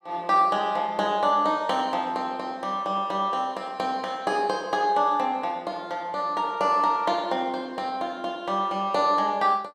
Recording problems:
none

